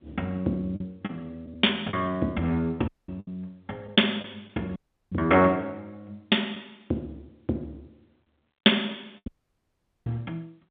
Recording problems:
telephone audio; 240 Hz to 3.6 kHz, G.711
packet loss; 3% of the sound replaced, filled with the last packet
dropout; at 3 s, at 5 s and at 9.5 s for 1 s

